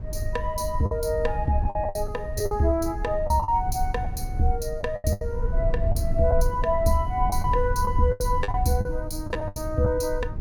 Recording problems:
low-frequency rumble; below 76 Hz, SNR 5 dB
lost packets; 9% of the sound replaced, filled with the last packet

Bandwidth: 17 kHz